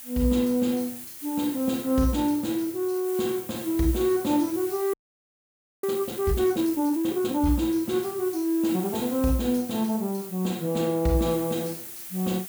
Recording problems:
hiss; slope +1 dB per octave, SNR 12 dB
audio freezing; at 5 s for 1 s

